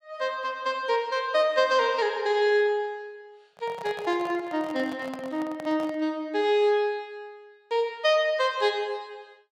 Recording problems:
microphone handling noise; from 3.5 to 6 s; peak -9 dB vs average level

